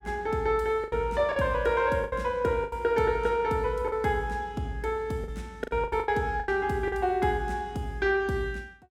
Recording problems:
packet loss; 8% of the sound replaced, filled with the last packet

